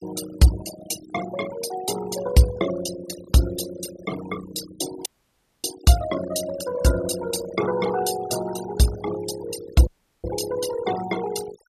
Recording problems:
noise reduction artefacts; signal-to-artefact ratio 11 dB
dropout; at 5 s for 0.5 s and at 10 s

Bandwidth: 14.5 kHz